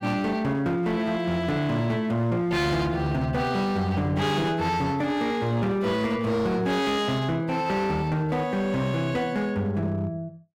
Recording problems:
distortion; hard clipping, signal-to-distortion ratio 11 dB

